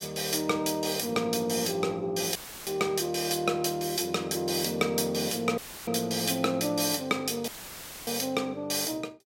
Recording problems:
audio cutting out; at 2.5 s, at 5.5 s and at 7.5 s for 0.5 s; filled with static

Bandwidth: 16 kHz